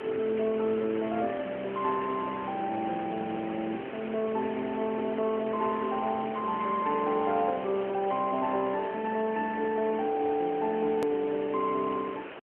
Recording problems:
telephone audio; 280 Hz to 3.1 kHz, AMR-NB
hiss; SNR 11 dB
click at an edit; at 11 s

